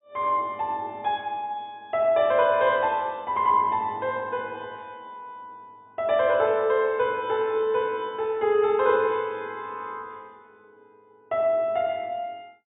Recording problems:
low-pass filter; nothing above 4 kHz

